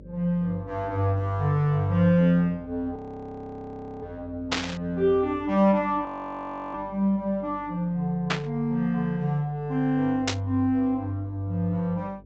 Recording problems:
treble cut off; nothing above 8 kHz
hum; 50 Hz, harmonics up to 600 Hz, SNR 24 dB
audio freezing; at 3 s for 1 s and at 6 s for 0.5 s
burst of static; at 4.5 s, at 8.5 s and at 10 s; peak +4 dB vs average level

